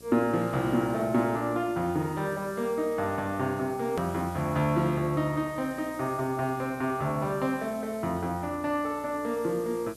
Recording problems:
hum; 60 Hz, harmonics up to 1.3 kHz, SNR 24 dB
hiss; slope +6 dB per octave, SNR 22 dB
edit click; at 4 s

